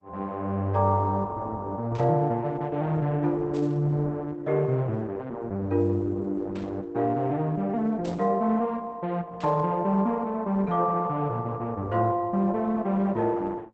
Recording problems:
lossy codec; Opus, log-spectral distance 2 dB
burst of static; 5 times, first at 2 s; peak -13 dB vs average level

